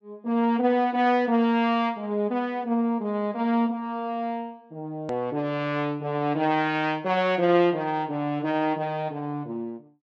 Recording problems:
treble missing; nothing above 8 kHz
hard cut with a click; at 5 s

